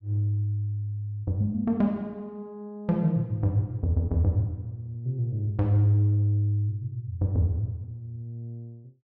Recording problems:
none

